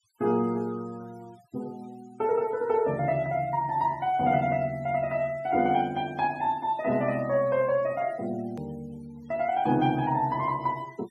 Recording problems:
denoising artefacts; signal-to-artefact ratio 25 dB
hard cut with a click; at 8.5 s

